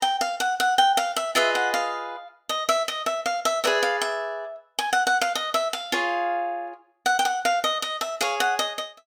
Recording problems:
none

